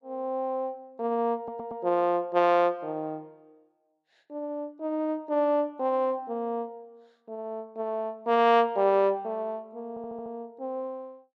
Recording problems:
audio stuttering; at 1.5 s and at 10 s

